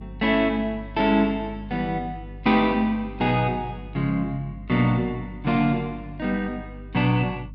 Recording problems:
electrical hum; 50 Hz, harmonics up to 300 Hz, SNR 16 dB

